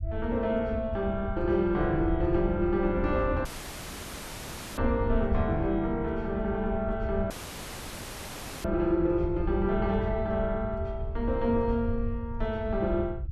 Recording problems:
rumble; below 92 Hz, SNR 7 dB
dropout; at 3.5 s for 1.5 s and at 7.5 s for 1.5 s

